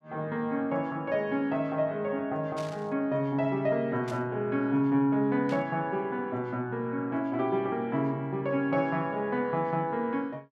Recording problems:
static burst; at 2.5 s, at 4 s and at 5.5 s; peak -11 dB vs average level

